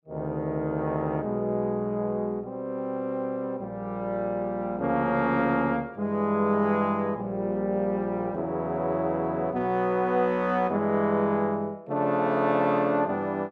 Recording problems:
none

